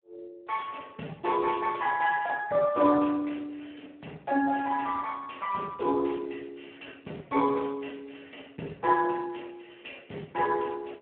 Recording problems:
phone line; 190 Hz to 2.7 kHz, Speex

